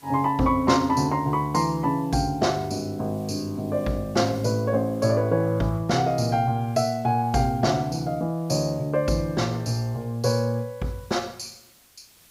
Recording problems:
background hiss; slope 0 dB per octave, SNR 29 dB

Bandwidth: 15.5 kHz